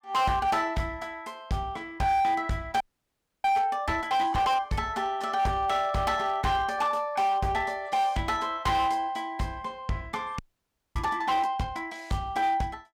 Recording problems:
distortion; hard clipping, signal-to-distortion ratio 12 dB
frozen audio; at 3 s for 0.5 s and at 10 s for 0.5 s

